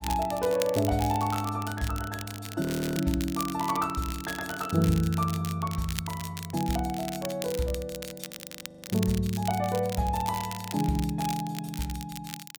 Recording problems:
crackle; vinyl, SNR 11 dB
audio freezing; at 2.5 s and at 8.5 s for 0.5 s

